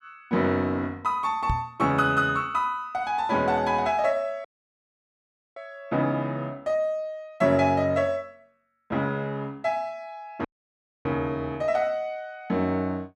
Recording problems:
microphone bump; at 1.5 s; peak +2 dB vs average level
dropout; at 4.5 s for 1 s and at 10 s for 0.5 s

